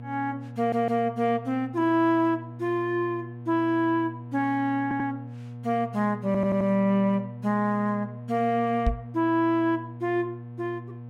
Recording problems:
mains hum; 60 Hz, harmonics up to 720 Hz, SNR 13 dB
stutter; at 0.5 s, at 5 s and at 6.5 s
microphone bump; at 9 s; peak +4 dB vs average level

